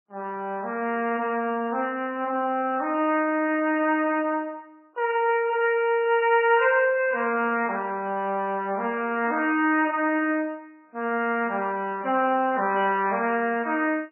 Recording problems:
codec artefacts; MP3, then MP3, log-spectral distance 2 dB, nothing above 2.6 kHz

